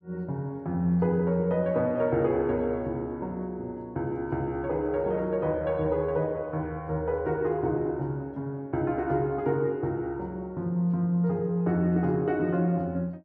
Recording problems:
none

